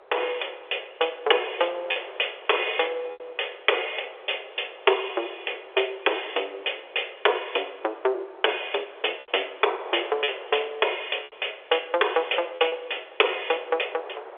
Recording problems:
telephone audio; 340 Hz to 3.5 kHz, G.711
wind on the microphone; below 1 kHz, SNR 19 dB
lost packets; 3% of the sound replaced, filled with repeated pitch periods

